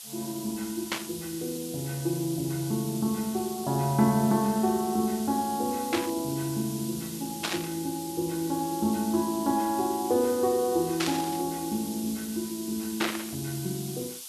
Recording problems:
hiss; SNR 10 dB
burst of static; 5 times, first at 1 s; peak +4 dB vs average level

